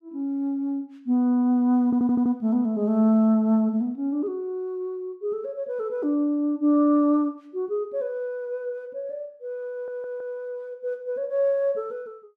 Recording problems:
stutter; at 2 s and at 9.5 s

